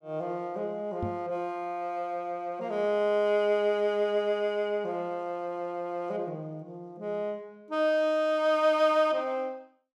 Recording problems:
knock on the microphone; at 1 s; peak -2 dB vs average level

